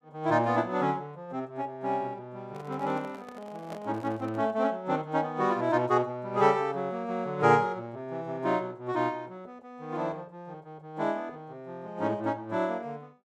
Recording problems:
handling noise; from 2.5 to 4.5 s; peak -9 dB vs average level

